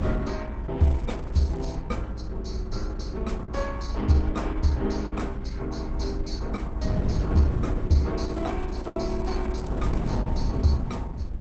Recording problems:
lossy codec; Opus, log-spectral distance 3 dB
low-frequency rumble; below 58 Hz, SNR 6 dB
wind noise; below 210 Hz, SNR 5 dB
packet loss; 2% of the sound replaced, filled with the last packet
crackle; at 1 s and from 8 to 10 s; loose cable, SNR 27 dB

